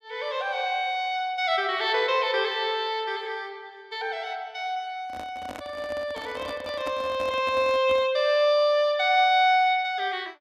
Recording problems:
handling noise; from 5 to 8 s; peak -7 dB vs average level

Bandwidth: 14.5 kHz